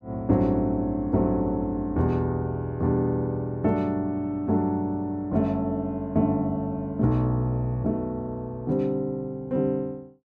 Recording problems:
none

